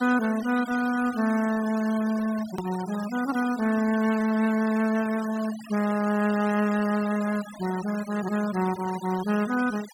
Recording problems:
noise reduction artefacts; signal-to-artefact ratio 15 dB
edit click; at 2.5 s

